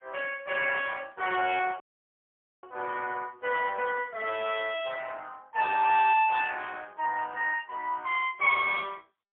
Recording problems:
phone line; 320 Hz to 3.3 kHz, AMR-NB, then MP3
audio cutting out; at 2 s for 1 s

